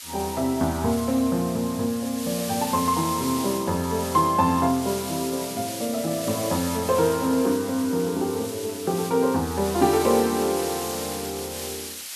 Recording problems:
background hiss; slope +4 dB per octave, SNR 9 dB

